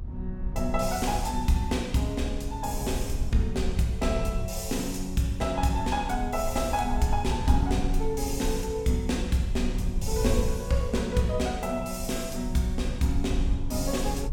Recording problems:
rumble; below 72 Hz, SNR 6 dB

